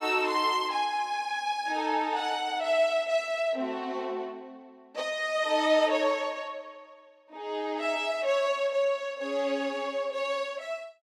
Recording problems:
none

